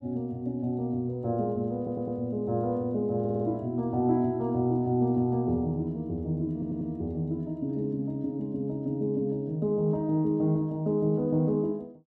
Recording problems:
stutter; at 2 s, at 3 s and at 6.5 s

